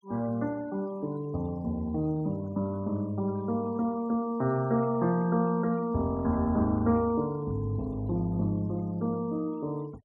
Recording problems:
denoising artefacts; signal-to-artefact ratio 27 dB

